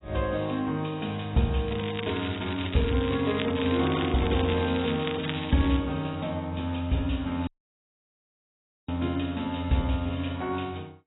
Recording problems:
lossy compression; AAC, log-spectral distance 11 dB, nothing above 3.8 kHz
crackle; from 1.5 to 6 s; loose cable, SNR 10 dB
dropout; at 7.5 s for 1.5 s

